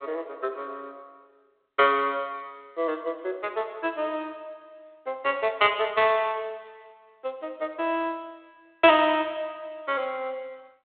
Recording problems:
telephone audio; 280 Hz to 3.7 kHz, G.726

